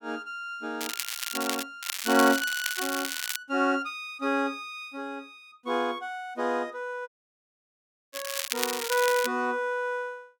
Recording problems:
crackle; at 1 s, from 2 to 3.5 s and from 8 to 9.5 s; loose cable, SNR 3 dB
dropout; at 7 s for 1 s

